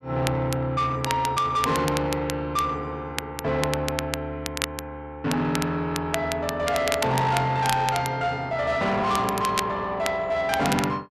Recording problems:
distorted audio; soft clipping, signal-to-distortion ratio 10 dB
crackle; vinyl, SNR 8 dB

